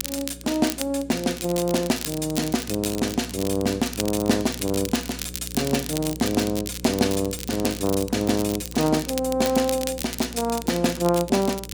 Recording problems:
hum; 60 Hz, harmonics up to 540 Hz, SNR 16 dB
crackling; vinyl, SNR 9 dB

